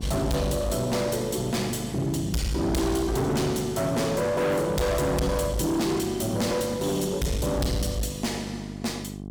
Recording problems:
distortion; hard clipping, uneven, signal-to-distortion ratio 5 dB
hum; 50 Hz, harmonics up to 850 Hz, SNR 12 dB

